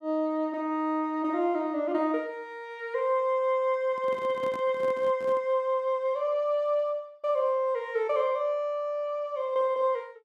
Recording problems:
microphone handling noise; from 4 to 5.5 s; peak -11 dB vs average level

